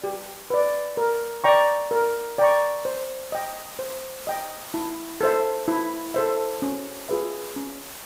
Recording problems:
background hiss; SNR 13 dB

